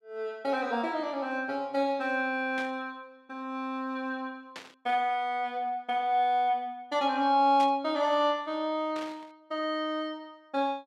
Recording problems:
static burst; 4 times, first at 2.5 s; peak -8 dB vs average level

